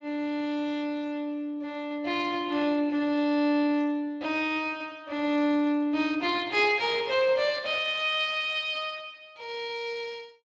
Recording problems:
lossy compression; Speex, log-spectral distance 3 dB

